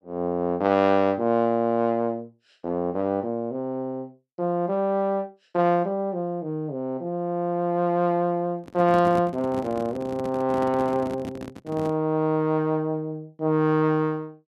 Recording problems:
handling noise; from 8.5 to 12 s; peak -5 dB vs average level

